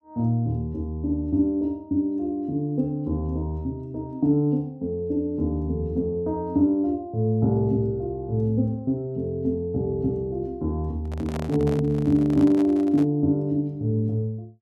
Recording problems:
handling noise; from 11 to 13 s; peak -6 dB vs average level

